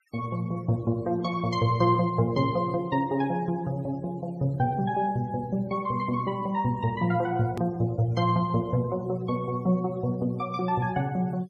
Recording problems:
noise reduction artefacts; signal-to-artefact ratio 27 dB
hard cut with a click; at 7.5 s

